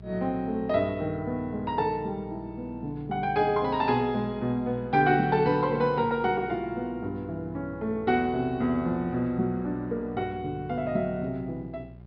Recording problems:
treble missing; nothing above 5.5 kHz
hum; 60 Hz, harmonics up to 780 Hz, SNR 18 dB

